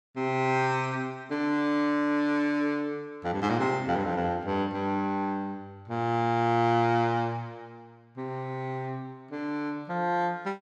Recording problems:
none

